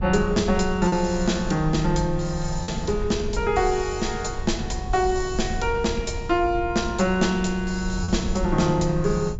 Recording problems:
treble cut off; nothing above 8 kHz
rumble; below 84 Hz, SNR 9 dB
packet loss; 1.3% of the sound replaced, filled with repeated pitch periods

